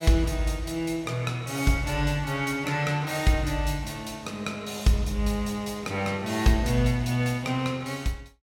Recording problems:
none

